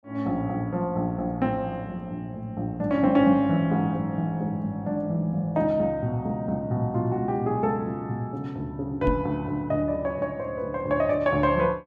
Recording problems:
microphone thump; at 9 s; peak +1 dB vs average level

